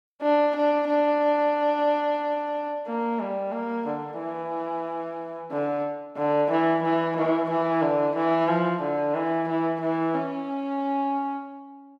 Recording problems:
none

